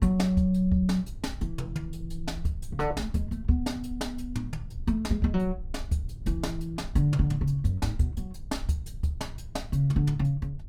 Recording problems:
low-frequency rumble; below 62 Hz, SNR 13 dB

